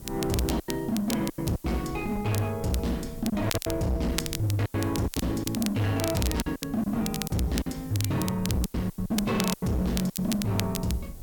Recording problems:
distorted audio; hard clipping, signal-to-distortion ratio 7 dB
background hiss; SNR 21 dB
rumble; below 150 Hz, SNR 16 dB
crackling; vinyl, SNR 8 dB
packet loss; 10% of the sound replaced, filled with silence

